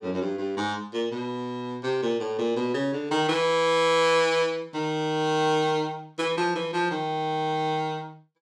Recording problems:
none

